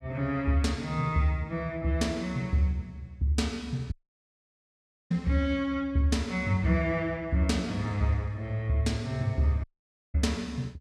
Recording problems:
dropout; at 4 s for 1 s and at 9.5 s for 0.5 s

